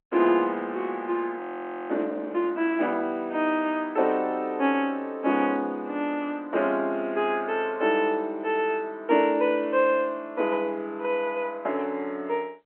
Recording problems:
phone line; 220 Hz to 3.3 kHz, G.711
audio freezing; at 1.5 s for 0.5 s

